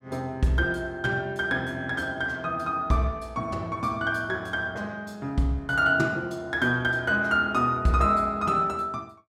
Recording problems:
none

